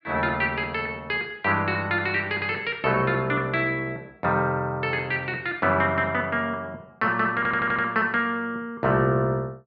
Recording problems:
stutter; at 7.5 s

